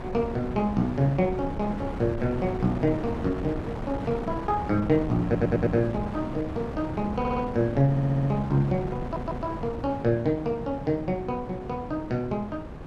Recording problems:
wind on the microphone; below 520 Hz, SNR 8 dB
stutter; 4 times, first at 5 s

